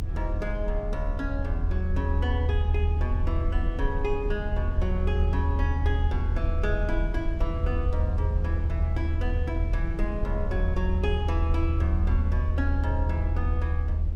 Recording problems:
low-frequency rumble; below 78 Hz, SNR -6 dB

